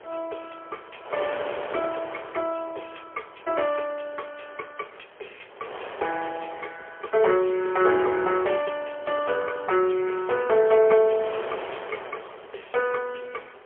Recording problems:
telephone audio; 340 Hz to 3.3 kHz, AMR-NB, then MP3
wind on the microphone; below 1.5 kHz, SNR 15 dB

